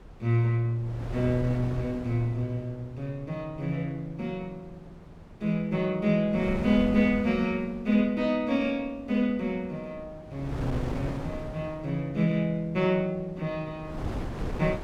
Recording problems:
wind on the microphone; below 390 Hz, SNR 11 dB

